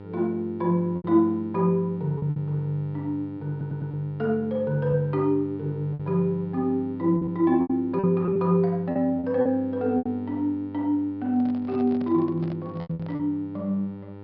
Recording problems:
treble missing; nothing above 5.5 kHz
hum; 50 Hz, harmonics up to 1.4 kHz, SNR 15 dB
packet loss; 7% of the sound replaced, filled with repeated pitch periods
audio stuttering; at 3.5 s
handling noise; from 11 to 13 s; peak -11 dB vs average level

